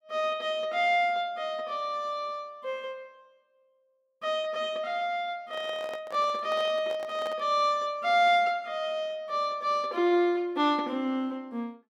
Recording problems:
handling noise; from 5.5 to 7.5 s; peak -8 dB vs average level

